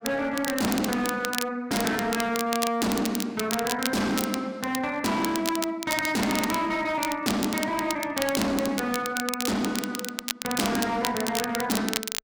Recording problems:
distortion; hard clipping, signal-to-distortion ratio 7 dB
crackle; vinyl, SNR 6 dB

